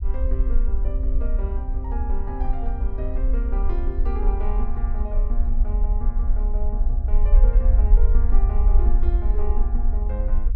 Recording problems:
low-frequency rumble; below 50 Hz, SNR -12 dB

